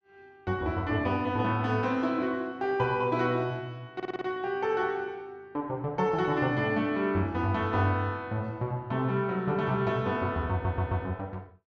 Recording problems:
audio stuttering; at 4 s and at 11 s

